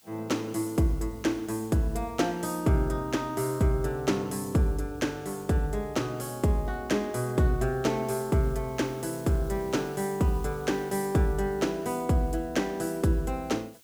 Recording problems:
hiss; SNR 25 dB

